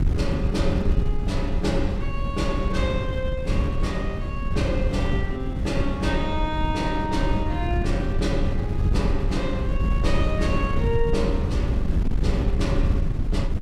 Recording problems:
wind noise; below 110 Hz, SNR -2 dB

